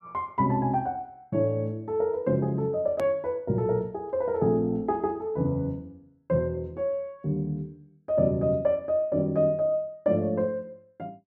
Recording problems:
edit click; at 3 s

